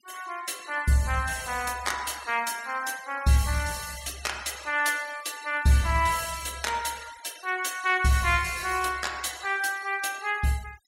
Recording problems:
noise reduction artefacts; signal-to-artefact ratio 18 dB

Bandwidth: 16 kHz